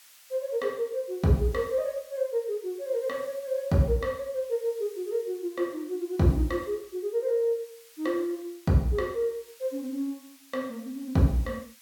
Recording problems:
background hiss; SNR 23 dB

